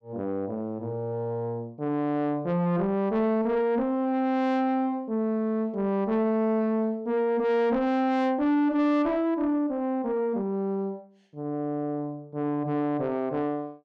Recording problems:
distorted audio; soft clipping, signal-to-distortion ratio 11 dB

